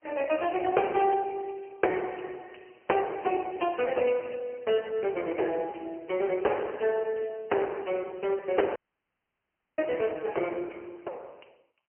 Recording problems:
telephone audio; 320 Hz to 3.1 kHz, AMR-NB, then MP3
audio cutting out; at 9 s for 1 s

